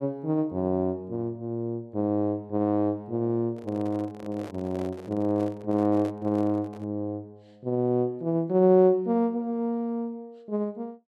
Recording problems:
microphone handling noise; from 3.5 to 7 s; peak -10 dB vs average level

